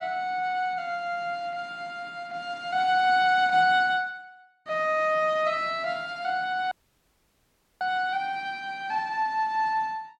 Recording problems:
dropout; at 6.5 s for 1 s

